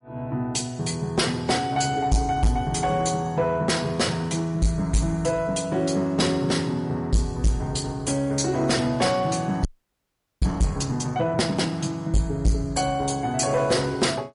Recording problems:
lossy codec; MP3, log-spectral distance 3 dB, nothing above 10.4 kHz
distortion; soft clipping, signal-to-distortion ratio 7 dB
audio freezing; at 9.5 s for 1 s

